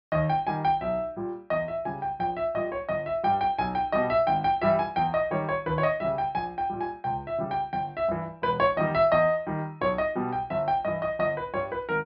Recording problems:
low-pass filter; nothing above 5.5 kHz

